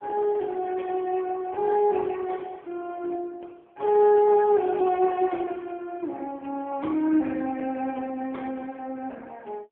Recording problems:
telephone audio; 240 Hz to 3.3 kHz, AMR-NB

